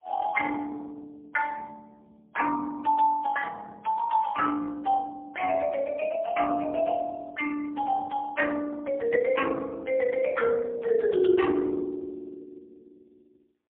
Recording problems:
telephone audio; 260 Hz to 2.7 kHz, AMR-NB, then MP3

